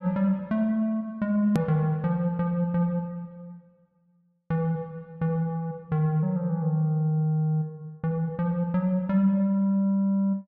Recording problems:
edit click; at 1.5 s

